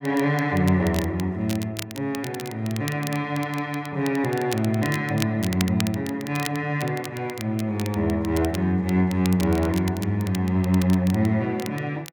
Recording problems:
crackle; vinyl, SNR 14 dB

